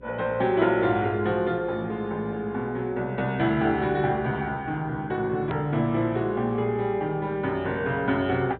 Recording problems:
low-pass filter; nothing above 4 kHz
hum; 60 Hz, harmonics up to 540 Hz, SNR 23 dB
hard cut with a click; at 5.5 s

